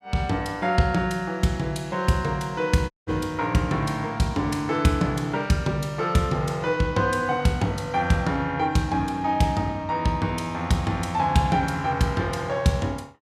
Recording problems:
dropout; at 3 s

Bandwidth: 14.5 kHz